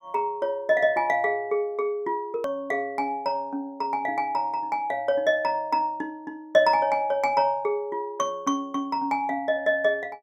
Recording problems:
hard cut with a click; at 2.5 s

